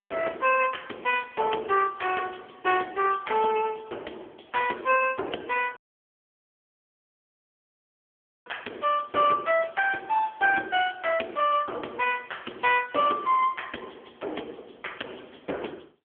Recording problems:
phone line; 280 Hz to 3.3 kHz, AMR-NB
dropout; at 6 s for 2.5 s

